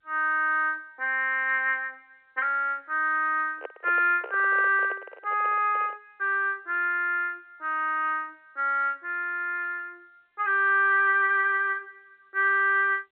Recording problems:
telephone audio; 320 Hz to 3.1 kHz, G.711
handling noise; from 3.5 to 6 s; peak -8 dB vs average level

